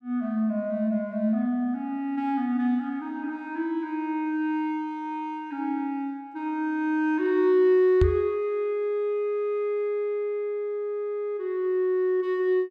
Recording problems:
microphone thump; at 8 s; peak +6 dB vs average level

